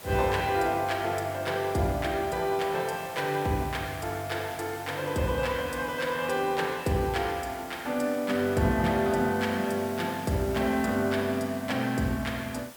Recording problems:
hiss; slope -2 dB per octave, SNR 17 dB

